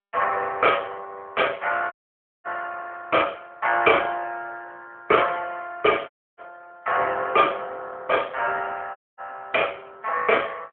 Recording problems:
telephone audio; 340 Hz to 3.4 kHz, AMR-NB
dropout; at 2 s for 0.5 s, at 6 s and at 9 s

